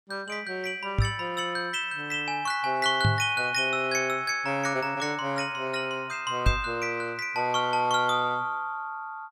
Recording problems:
knock on the microphone; at 1 s, at 3 s and at 6.5 s; peak +6 dB vs average level

